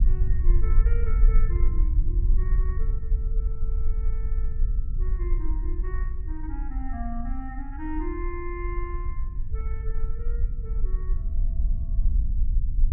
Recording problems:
treble missing; nothing above 3.3 kHz
low-frequency rumble; below 48 Hz, SNR -12 dB

